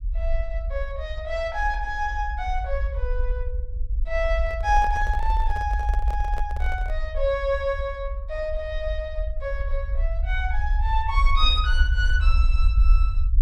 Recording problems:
rumble; below 56 Hz, SNR -1 dB
microphone handling noise; from 4.5 to 7 s; peak -6 dB vs average level

